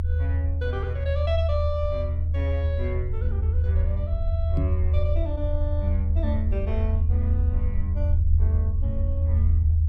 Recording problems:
rumble; below 80 Hz, strongest tone 80 Hz, SNR -9 dB
knock on the microphone; at 4.5 s; peak +8 dB vs average level

